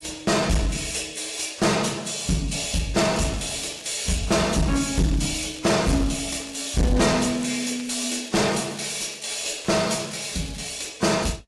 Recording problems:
lossy compression; AAC, log-spectral distance 7 dB, nothing above 11 kHz
distorted audio; soft clipping, signal-to-distortion ratio 7 dB
crackle; from 3 to 5.5 s and from 6 to 11 s; loose cable, SNR 18 dB

